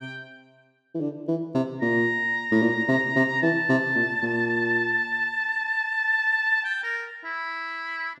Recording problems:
none

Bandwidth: 12.5 kHz